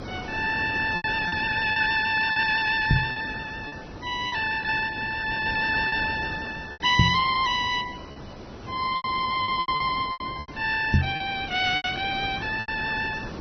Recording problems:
codec artefacts; Vorbis, then MP2, log-spectral distance 5 dB, nothing above 5.3 kHz
hiss; SNR 14 dB
packet loss; 8% of the sound replaced, filled with repeated pitch periods
knock on the microphone; at 3 s, at 7 s and at 11 s; peak +8 dB vs average level

